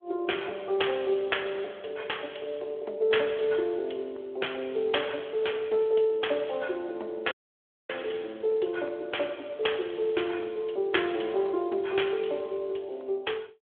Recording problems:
telephone audio; 320 Hz to 3.4 kHz, Speex
audio cutting out; at 7.5 s for 0.5 s

